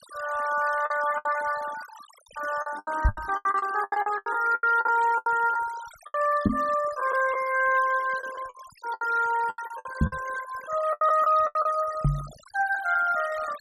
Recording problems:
denoising artefacts; signal-to-artefact ratio 18 dB
packet loss; 13% of the sound replaced, filled with the last packet
knock on the microphone; 4 times, first at 3 s; peak +7 dB vs average level

